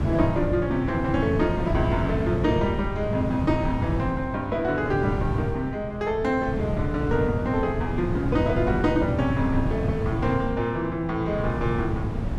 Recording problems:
wind noise; below 210 Hz, SNR 3 dB

